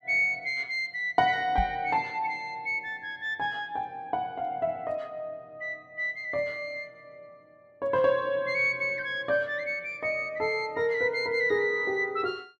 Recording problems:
microphone bump; at 1.5 s; peak +2 dB vs average level

